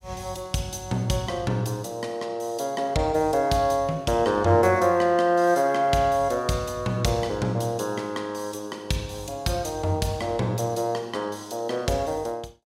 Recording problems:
none

